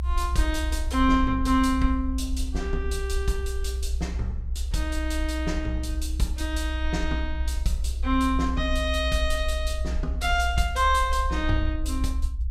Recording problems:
rumble; below 64 Hz, strongest tone 62 Hz, SNR 2 dB

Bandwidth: 16 kHz